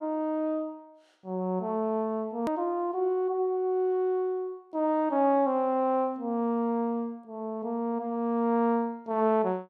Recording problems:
hard cut with a click; at 2.5 s

